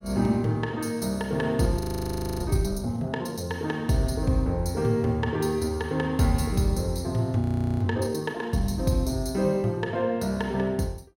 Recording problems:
frozen audio; at 2 s for 0.5 s and at 7.5 s

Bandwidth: 16.5 kHz